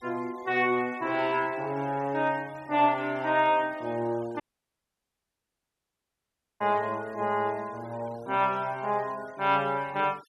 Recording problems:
noise reduction artefacts; signal-to-artefact ratio 24 dB
audio cutting out; at 4.5 s for 2 s

